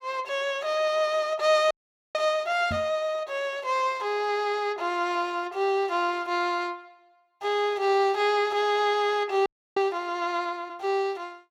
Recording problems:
frozen audio; at 1.5 s and at 9.5 s
knock on the microphone; at 2.5 s; peak -4 dB vs average level

